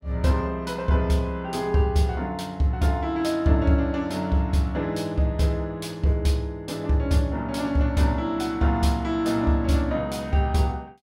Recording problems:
none

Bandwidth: 16.5 kHz